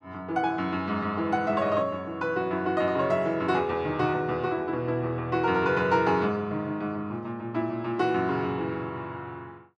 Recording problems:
none

